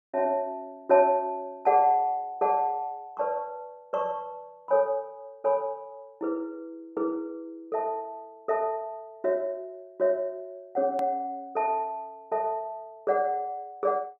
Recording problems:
click at an edit; at 11 s

